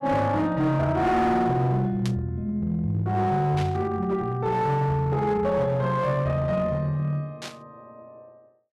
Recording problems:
distortion; hard clipping, uneven, signal-to-distortion ratio 11 dB
static burst; at 2 s, at 3.5 s and at 7.5 s; peak -7 dB vs average level

